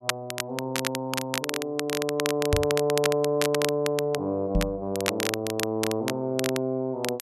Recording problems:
crackle; vinyl, SNR 4 dB
microphone bump; at 2.5 s and at 4.5 s; peak +6 dB vs average level

